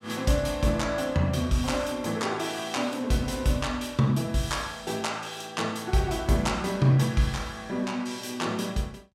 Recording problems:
none

